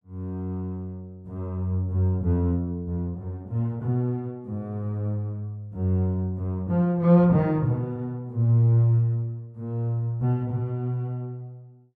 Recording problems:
none

